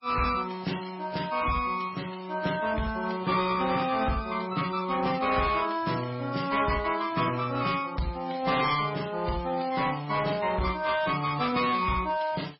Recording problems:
lossy codec; AAC, then MP3, log-spectral distance 5 dB, nothing above 5.3 kHz
distorted audio; hard clipping, signal-to-distortion ratio 12 dB

